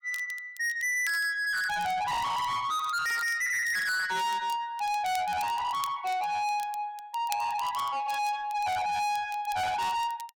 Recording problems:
distorted audio; soft clipping, signal-to-distortion ratio 6 dB
crackle; vinyl, SNR 20 dB

